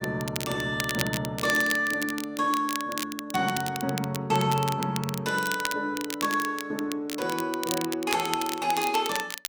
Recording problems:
crackling; vinyl, SNR 7 dB

